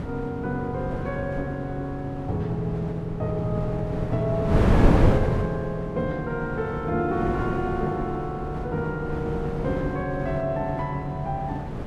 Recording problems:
wind noise; below 350 Hz, SNR 1 dB

